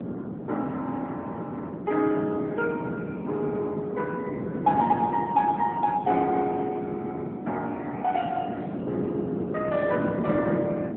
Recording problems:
telephone audio; 190 Hz to 3.4 kHz, AMR-NB
wind noise; below 390 Hz, SNR 5 dB

